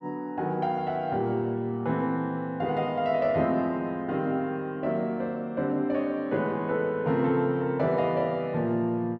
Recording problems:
none

